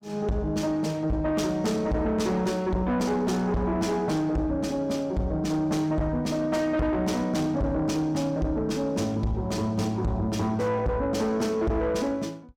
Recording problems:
distortion; soft clipping, signal-to-distortion ratio 7 dB

